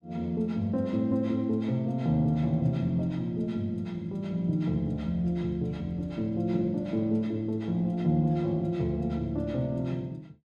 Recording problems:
none

